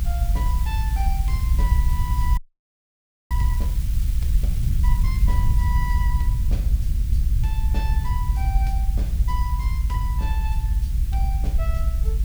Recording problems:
hiss; slope +2 dB per octave, SNR 7 dB
low-frequency rumble; below 68 Hz, SNR -12 dB
audio freezing; at 2.5 s for 1 s

